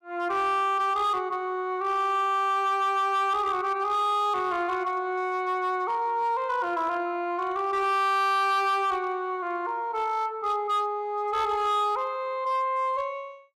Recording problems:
distortion; hard clipping, signal-to-distortion ratio 12 dB

